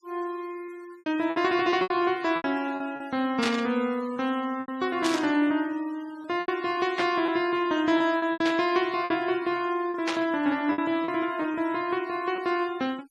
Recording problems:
denoising artefacts; signal-to-artefact ratio 21 dB
lost packets; 8% of the sound replaced, filled with repeated pitch periods
burst of static; 5 times, first at 3.5 s; peak +1 dB vs average level

